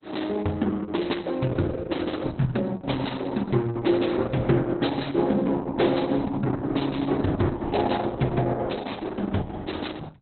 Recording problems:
lossy codec; Opus, log-spectral distance 5 dB, nothing above 4.1 kHz

